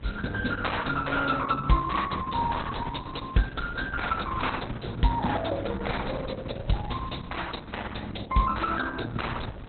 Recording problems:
codec artefacts; Opus, log-spectral distance 8 dB, nothing above 4.1 kHz
electrical hum; 60 Hz, harmonics up to 360 Hz, SNR 18 dB
wind noise; below 570 Hz, SNR 13 dB

